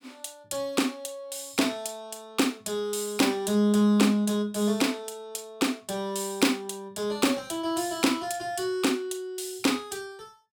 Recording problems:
none

